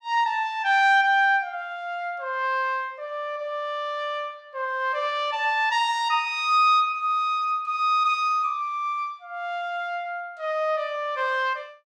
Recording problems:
none

